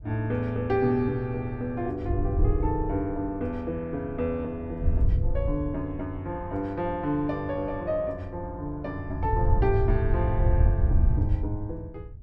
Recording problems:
wind noise; below 92 Hz, SNR -2 dB

